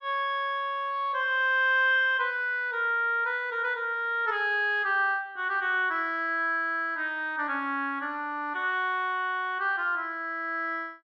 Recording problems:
none

